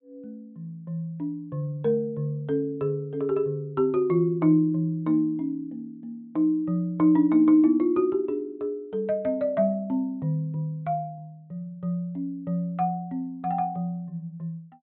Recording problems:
treble missing; nothing above 4 kHz

